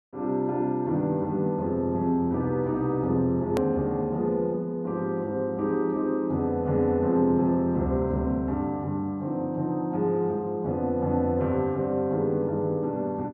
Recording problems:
click at an edit; at 3.5 s

